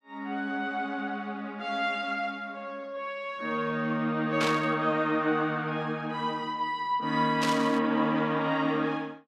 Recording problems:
burst of static; at 4.5 s and at 7.5 s; peak +2 dB vs average level

